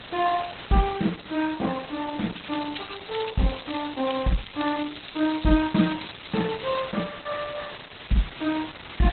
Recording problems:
codec artefacts; Opus, log-spectral distance 22 dB, nothing above 4 kHz
background hiss; SNR 13 dB
crackling; from 2.5 to 7 s; loose cable, SNR 13 dB

